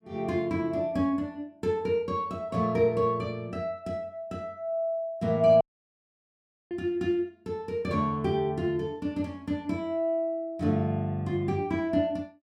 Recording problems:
audio cutting out; at 5.5 s for 1 s

